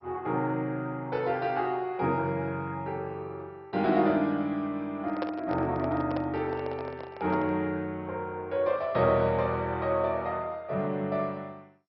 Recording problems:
codec artefacts; MP2, log-spectral distance 2 dB, nothing above 4.8 kHz
microphone handling noise; from 5 to 7.5 s; peak -1 dB vs average level

